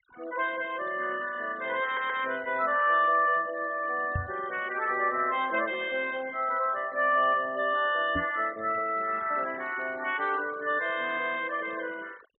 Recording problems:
low-pass filter; nothing above 4.1 kHz
denoising artefacts; signal-to-artefact ratio 20 dB
stutter; at 2 s
knock on the microphone; at 4 s and at 8 s; peak 0 dB vs average level

